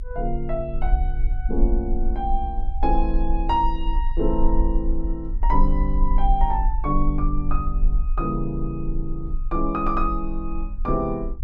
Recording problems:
low-frequency rumble; below 42 Hz, strongest tone 22 Hz, SNR 0 dB

